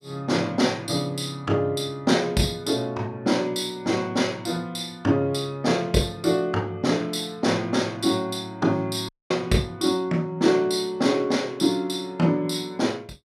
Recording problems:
audio cutting out; at 9 s

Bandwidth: 14.5 kHz